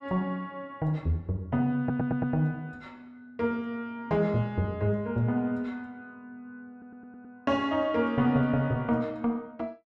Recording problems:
stutter; at 2 s and at 6.5 s

